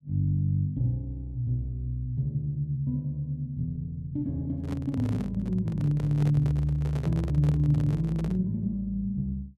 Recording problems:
handling noise; from 4.5 to 8.5 s; peak -6 dB vs average level

